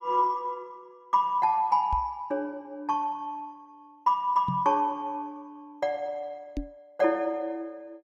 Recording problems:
microphone thump; at 2 s, at 4.5 s and at 6.5 s; peak -1 dB vs average level

